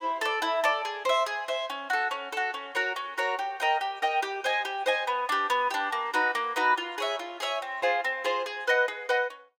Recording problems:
none

